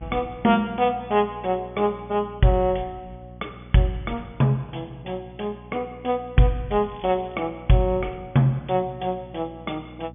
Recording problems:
treble cut off; nothing above 3.5 kHz
hum; 60 Hz, harmonics up to 600 Hz, SNR 20 dB
crackle; at 7 s; loose cable, SNR 28 dB

